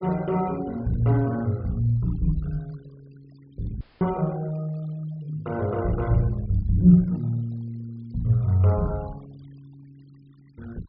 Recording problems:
treble cut off; nothing above 5.2 kHz
noise reduction artefacts; signal-to-artefact ratio 27 dB
audio cutting out; at 4 s

